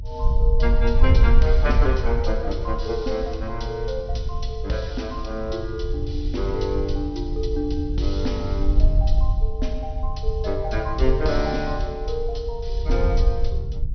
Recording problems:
codec artefacts; MP2, log-spectral distance 2 dB, nothing above 6 kHz
rumble; below 76 Hz, SNR 5 dB
wind on the microphone; below 58 Hz, SNR -2 dB

